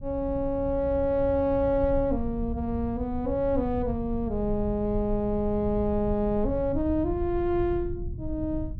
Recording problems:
low-frequency rumble; below 96 Hz, SNR 9 dB

